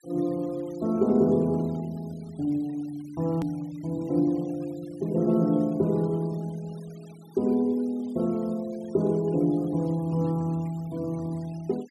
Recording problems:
noise reduction artefacts; signal-to-artefact ratio 27 dB
click at an edit; at 3.5 s

